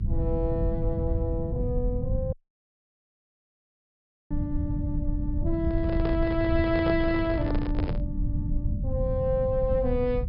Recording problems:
treble cut off; nothing above 5.5 kHz
rumble; below 120 Hz, SNR 1 dB
audio cutting out; at 2.5 s for 2 s
handling noise; from 5.5 to 8 s; peak 0 dB vs average level

